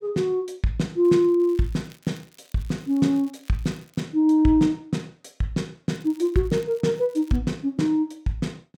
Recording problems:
crackling; from 1 to 4 s and from 6 to 7.5 s; loose cable, SNR 30 dB

